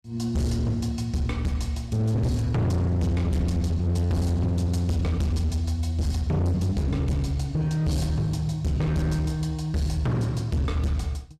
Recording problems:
distorted audio; hard clipping, signal-to-distortion ratio 7 dB

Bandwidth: 14.5 kHz